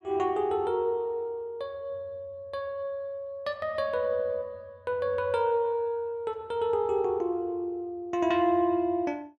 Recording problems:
none

